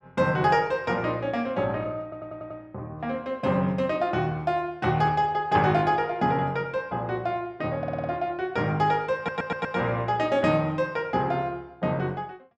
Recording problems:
audio stuttering; at 2 s, at 8 s and at 9 s

